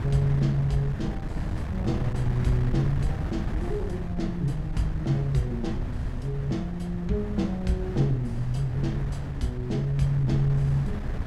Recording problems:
wind on the microphone; below 150 Hz, SNR 5 dB

